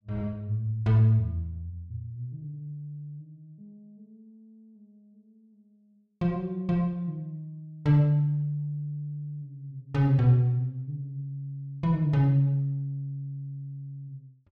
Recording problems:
none

